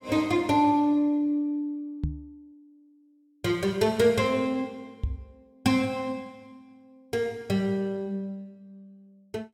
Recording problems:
knock on the microphone; at 2 s and at 5 s; peak +1 dB vs average level

